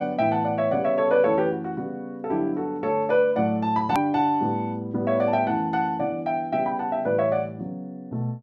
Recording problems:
hard cut with a click; at 4 s

